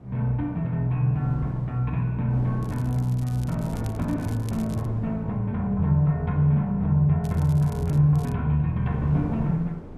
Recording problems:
wind on the microphone; below 330 Hz, SNR 15 dB
crackling; from 2.5 to 5 s, at 7 s and at 8 s; loose cable, SNR 25 dB

